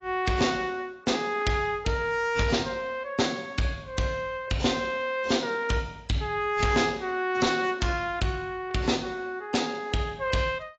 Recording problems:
codec artefacts; AAC, log-spectral distance 3 dB, nothing above 7.3 kHz
distortion; hard clipping, uneven, signal-to-distortion ratio 11 dB

